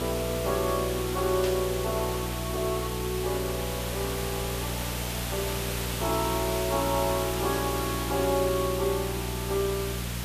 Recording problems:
hum; 60 Hz, harmonics up to 420 Hz, SNR 5 dB
hiss; slope -2 dB per octave, SNR 4 dB
static burst; at 1.5 s; peak -4 dB vs average level

